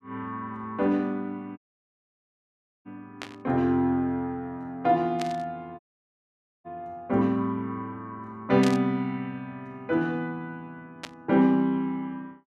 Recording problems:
dropout; at 1.5 s for 1.5 s and at 6 s for 1 s
static burst; 4 times, first at 3 s; peak -3 dB vs average level

